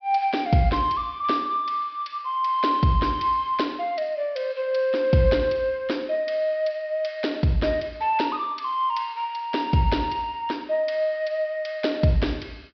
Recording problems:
treble missing; nothing above 5.5 kHz

